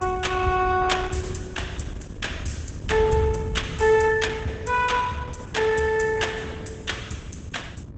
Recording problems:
lossy compression; Opus, log-spectral distance 3 dB, nothing above 8 kHz
hum; 50 Hz, harmonics up to 2.3 kHz, SNR 27 dB
wind on the microphone; below 120 Hz, SNR 9 dB

